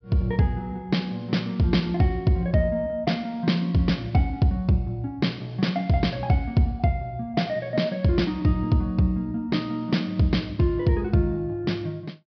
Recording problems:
treble cut off; nothing above 5.5 kHz

